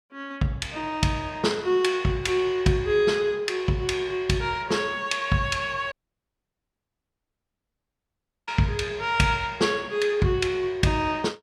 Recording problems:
dropout; at 6 s for 2.5 s

